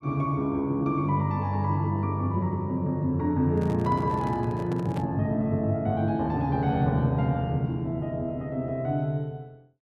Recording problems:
microphone handling noise; from 3.5 to 5 s; peak -8 dB vs average level

